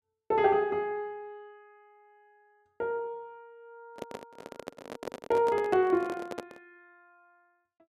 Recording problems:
microphone handling noise; from 4 to 6.5 s; peak -5 dB vs average level

